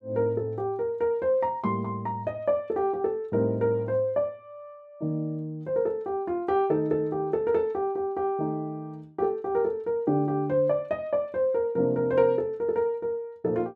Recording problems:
none

